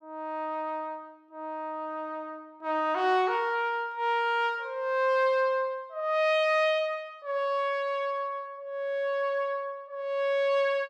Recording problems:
none

